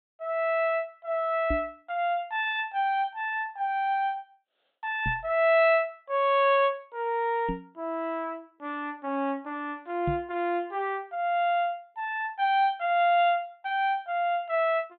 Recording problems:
treble missing; nothing above 4 kHz
microphone thump; 4 times, first at 1.5 s; peak -1 dB vs average level

